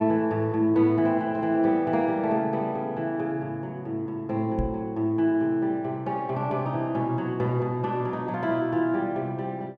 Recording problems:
knock on the microphone; at 4.5 s; peak 0 dB vs average level

